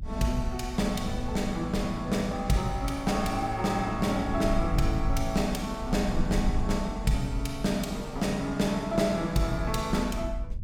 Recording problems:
rumble; below 66 Hz, SNR 8 dB

